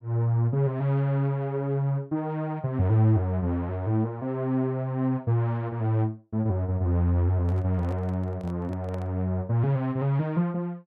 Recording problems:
microphone handling noise; from 7.5 to 9 s; peak -12 dB vs average level

